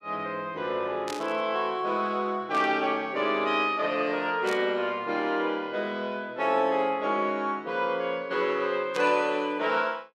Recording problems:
static burst; 4 times, first at 1 s; peak -6 dB vs average level

